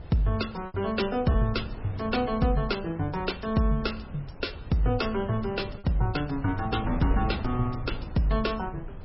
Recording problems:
codec artefacts; MP3, log-spectral distance 4 dB, nothing above 5.3 kHz
wind noise; below 160 Hz, SNR 10 dB
lost packets; 1.5% of the sound replaced, filled with repeated pitch periods

